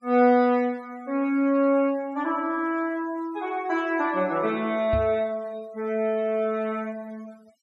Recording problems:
denoising artefacts; signal-to-artefact ratio 27 dB
knock on the microphone; at 5 s; peak -1 dB vs average level

